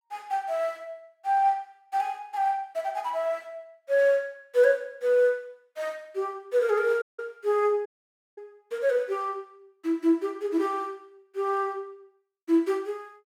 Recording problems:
dropout; at 7 s and at 8 s for 0.5 s

